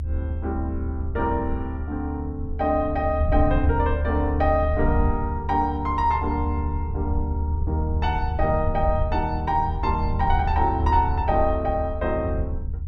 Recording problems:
low-frequency rumble; below 78 Hz, strongest tone 76 Hz, SNR 2 dB

